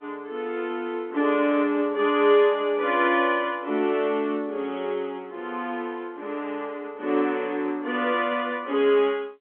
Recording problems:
phone line; 220 Hz to 3.4 kHz, G.711

